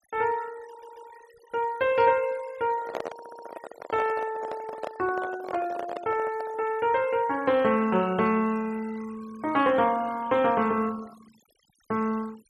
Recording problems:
denoising artefacts; signal-to-artefact ratio 21 dB
audio stuttering; at 0.5 s and at 3 s
handling noise; from 2.5 to 6.5 s; peak -2 dB vs average level

